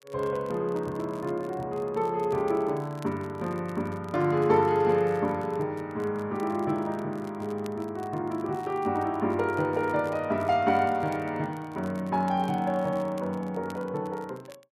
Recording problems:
crackle; vinyl, SNR 27 dB

